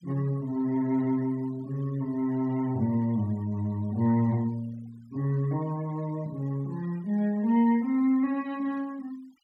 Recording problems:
noise reduction artefacts; signal-to-artefact ratio 25 dB

